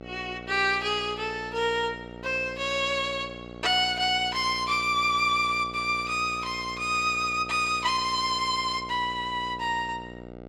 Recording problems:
electrical hum; 60 Hz, harmonics up to 2.2 kHz, SNR 16 dB

